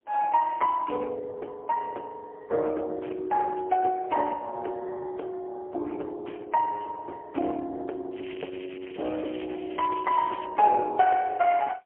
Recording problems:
telephone audio; 280 Hz to 3.3 kHz, AMR-NB, then MP3
crackling; from 8 to 10 s; loose cable, SNR 18 dB

